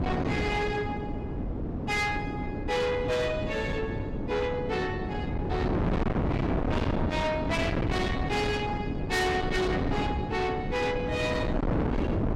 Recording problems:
distortion; soft clipping, signal-to-distortion ratio 7 dB
wind noise; below 440 Hz, SNR 1 dB

